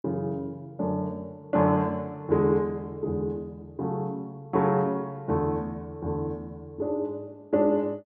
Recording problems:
none

